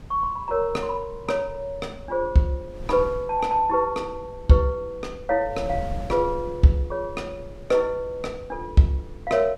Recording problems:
wind noise; below 150 Hz, SNR 16 dB

